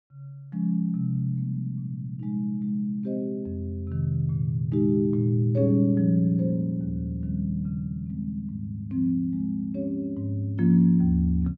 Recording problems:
none

